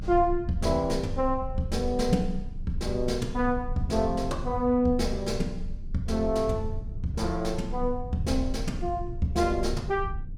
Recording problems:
low-frequency rumble; below 70 Hz, strongest tone 24 Hz, SNR 9 dB

